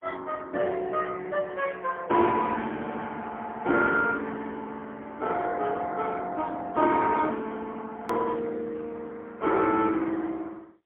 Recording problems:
telephone audio; 240 Hz to 3.7 kHz, AMR-NB, then MP3
click at an edit; at 8 s

